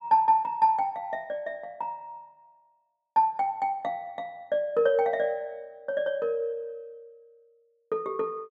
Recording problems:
none

